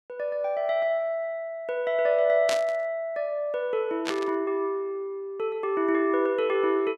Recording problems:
static burst; at 2.5 s and at 4 s; peak 0 dB vs average level

